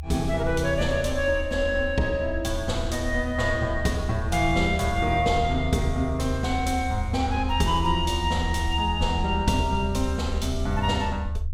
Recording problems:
low-frequency rumble; below 78 Hz, strongest tone 76 Hz, SNR 6 dB

